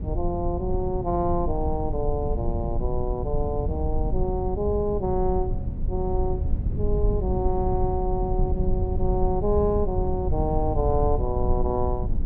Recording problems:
low-frequency rumble; below 90 Hz, SNR 1 dB

